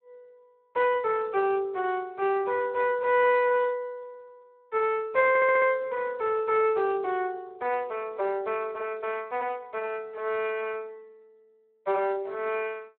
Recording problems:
telephone audio; 280 Hz to 3.4 kHz, Speex
audio stuttering; at 5.5 s

